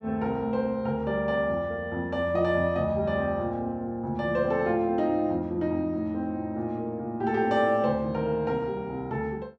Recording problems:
none

